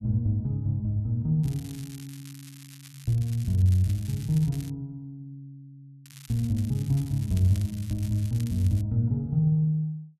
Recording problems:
crackle; from 1.5 to 4.5 s and from 6 to 9 s; loose cable, SNR 21 dB

